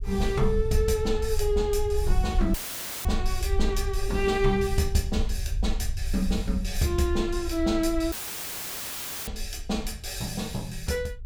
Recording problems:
rumble; below 64 Hz, SNR 4 dB
dropout; at 2.5 s for 0.5 s and at 8 s for 1 s

